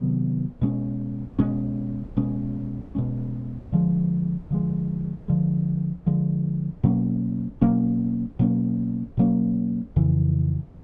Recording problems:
wind noise; below 190 Hz, SNR 21 dB

